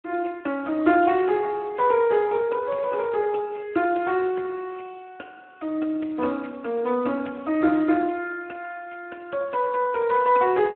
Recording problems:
telephone audio; 190 Hz to 2.6 kHz, Speex

